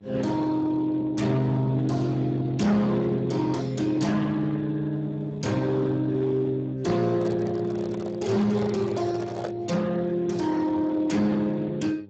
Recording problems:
lossy compression; Speex, log-spectral distance 3 dB, nothing above 7.3 kHz
distortion; hard clipping, signal-to-distortion ratio 12 dB
hum; 50 Hz, harmonics up to 900 Hz, SNR 25 dB
microphone handling noise; from 7 to 9.5 s; peak -5 dB vs average level

